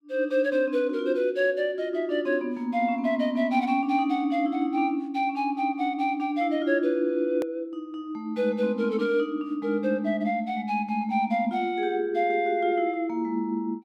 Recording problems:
hard cut with a click; at 7.5 s

